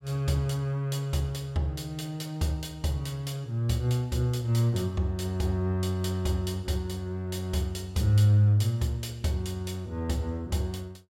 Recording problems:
none

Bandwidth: 16 kHz